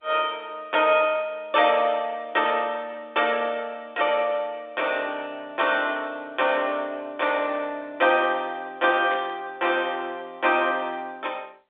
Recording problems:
telephone audio; 170 Hz to 3.7 kHz, G.711
burst of static; at 2.5 s and at 9 s; peak -9 dB vs average level

